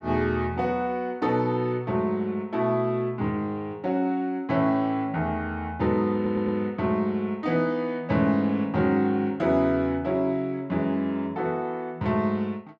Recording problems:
stutter; at 6 s

